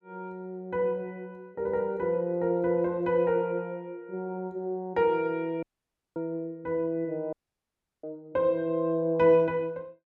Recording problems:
audio cutting out; at 5.5 s for 0.5 s and at 7.5 s for 0.5 s

